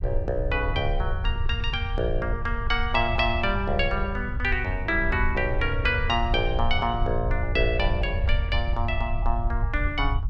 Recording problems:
low-frequency rumble; below 74 Hz, SNR 3 dB

